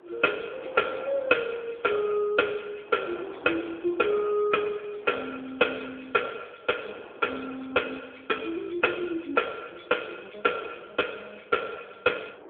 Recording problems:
telephone audio; 280 Hz to 3.4 kHz, AMR-NB
wind on the microphone; below 860 Hz, SNR 21 dB

